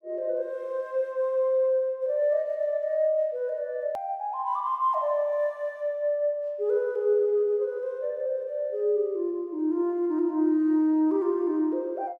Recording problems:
edit click; at 4 s

